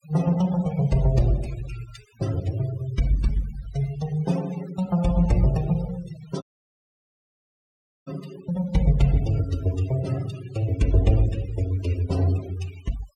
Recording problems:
noise reduction artefacts; signal-to-artefact ratio 17 dB
audio cutting out; at 6.5 s for 1.5 s

